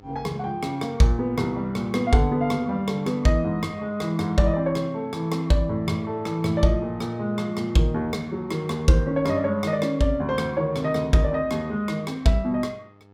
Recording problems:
electrical hum; 50 Hz, harmonics up to 1.7 kHz, SNR 27 dB

